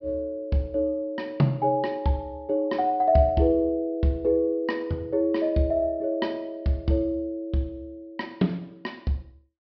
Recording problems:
treble missing; nothing above 5.5 kHz

